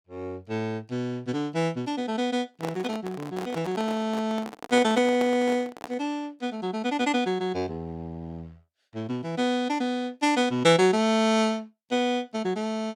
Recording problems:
handling noise; from 2.5 to 6 s; peak -4 dB vs average level

